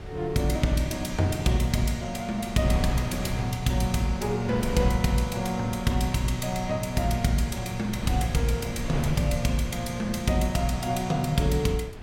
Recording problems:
wind noise; below 250 Hz, SNR 10 dB

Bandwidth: 16.5 kHz